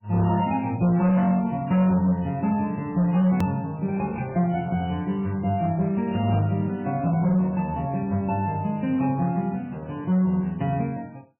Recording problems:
lossy codec; MP3, log-spectral distance 2 dB, nothing above 20.1 kHz
distorted audio; hard clipping, signal-to-distortion ratio 11 dB
click at an edit; at 3.5 s

